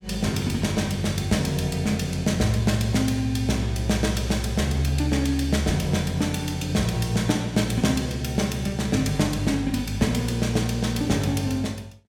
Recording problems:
none

